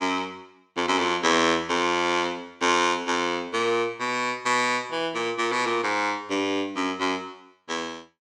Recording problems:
none

